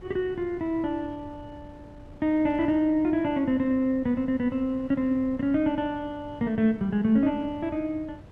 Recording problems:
wind on the microphone; below 290 Hz, SNR 20 dB

